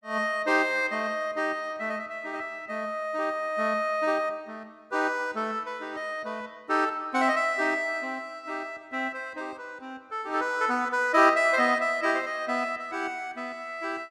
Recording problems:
none

